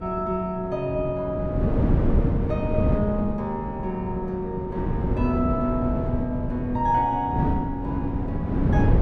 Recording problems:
wind noise; below 250 Hz, SNR 0 dB

